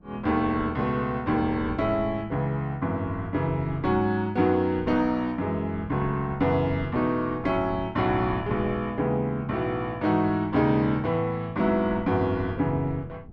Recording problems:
wind noise; below 240 Hz, SNR 17 dB

